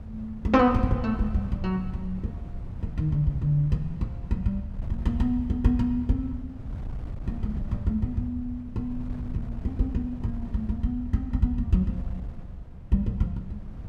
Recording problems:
wind on the microphone; below 120 Hz, SNR 11 dB

